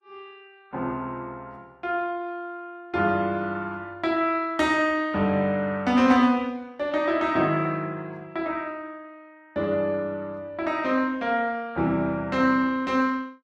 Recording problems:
lossy compression; Vorbis, log-spectral distance 2 dB, nothing above 13.1 kHz

